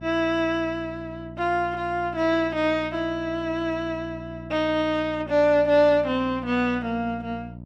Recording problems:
hum; 60 Hz, harmonics up to 660 Hz, SNR 16 dB

